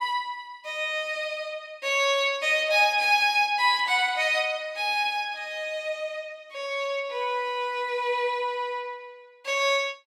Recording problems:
none

